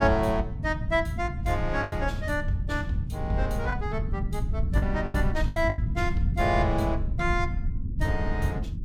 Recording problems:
low-frequency rumble; below 110 Hz, SNR 2 dB
packet loss; 5% of the sound replaced, filled with the last packet

